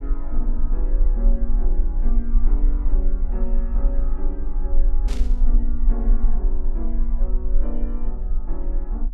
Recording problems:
rumble; below 36 Hz, strongest tone 24 Hz, SNR -11 dB
burst of static; at 5 s; peak +1 dB vs average level

